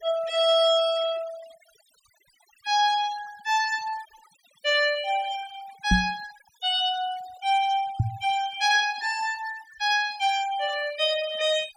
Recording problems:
denoising artefacts; signal-to-artefact ratio 18 dB
knock on the microphone; at 6 s and at 8 s; peak +6 dB vs average level

